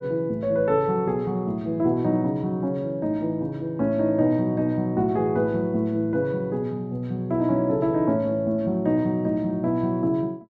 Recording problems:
none

